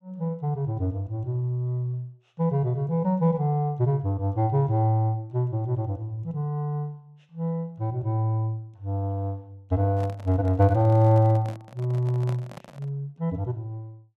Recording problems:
microphone handling noise; from 10 to 13 s; peak -9 dB vs average level

